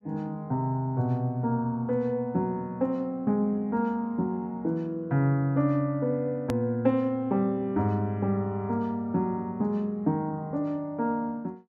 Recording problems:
edit click; at 6.5 s

